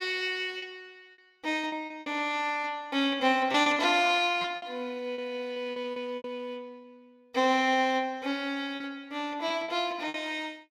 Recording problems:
lost packets; 8% of the sound replaced, filled with repeated pitch periods

